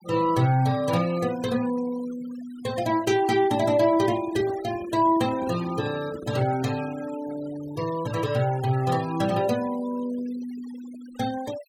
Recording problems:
noise reduction artefacts; signal-to-artefact ratio 19 dB
microphone handling noise; from 4 to 7 s; peak -9 dB vs average level

